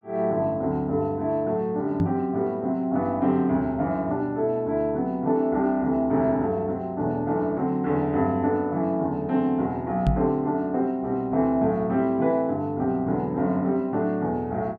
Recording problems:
knock on the microphone; at 2 s and at 10 s; peak +5 dB vs average level

